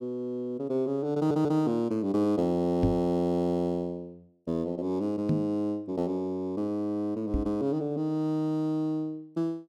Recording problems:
audio stuttering; at 1 s
knock on the microphone; at 3 s, at 5.5 s and at 7.5 s; peak +5 dB vs average level

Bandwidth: 14 kHz